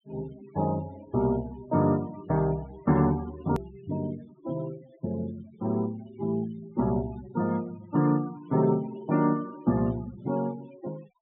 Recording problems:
treble missing; nothing above 3.6 kHz
denoising artefacts; signal-to-artefact ratio 21 dB
click at an edit; at 3.5 s

